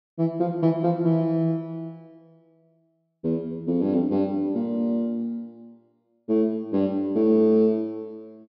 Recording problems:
treble missing; nothing above 5.5 kHz

